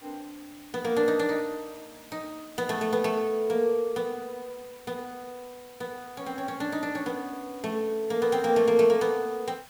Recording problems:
hiss; SNR 22 dB

